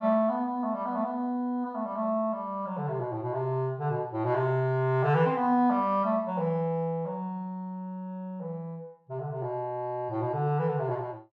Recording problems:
none

